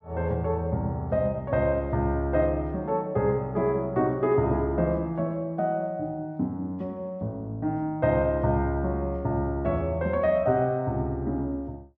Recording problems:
none

